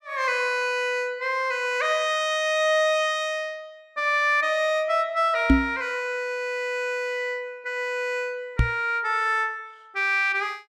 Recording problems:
microphone thump; at 5.5 s and at 8.5 s; peak +10 dB vs average level

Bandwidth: 14.5 kHz